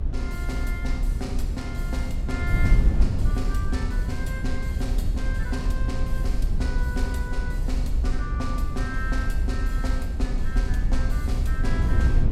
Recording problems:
rumble; below 60 Hz, SNR -4 dB
wind noise; below 90 Hz, SNR -6 dB

